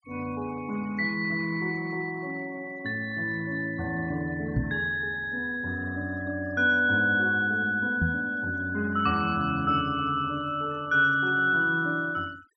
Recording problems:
denoising artefacts; signal-to-artefact ratio 24 dB
microphone bump; at 4.5 s and at 8 s; peak +3 dB vs average level

